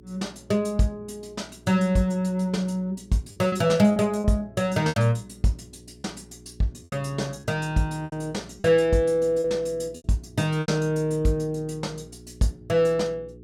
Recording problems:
hum; 60 Hz, harmonics up to 420 Hz, SNR 23 dB
packet loss; 4% of the sound replaced, filled with repeated pitch periods

